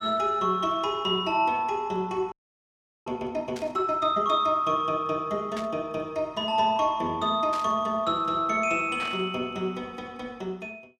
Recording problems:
frozen audio; at 2.5 s for 0.5 s
static burst; 4 times, first at 3.5 s; peak -8 dB vs average level

